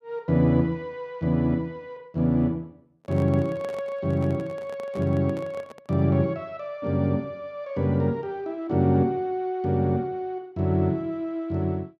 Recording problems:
handling noise; from 3 to 6 s; peak -10 dB vs average level

